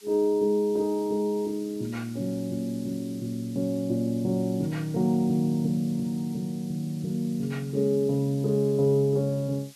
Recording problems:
background hiss; slope +3 dB per octave, SNR 23 dB

